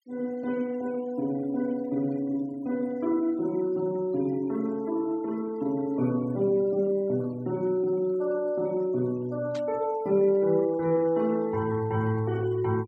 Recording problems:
denoising artefacts; signal-to-artefact ratio 24 dB
burst of static; at 9.5 s; peak -13 dB vs average level

